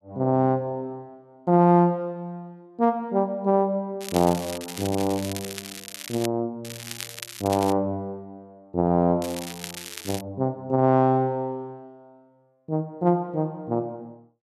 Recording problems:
crackle; from 4 to 6.5 s, from 6.5 to 7.5 s and at 9 s; loose cable, SNR 12 dB

